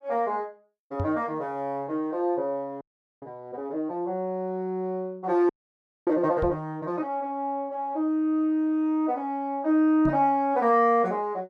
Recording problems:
microphone bump; at 1 s, at 6.5 s and at 10 s; peak -1 dB vs average level
audio freezing; at 3 s and at 5.5 s for 0.5 s

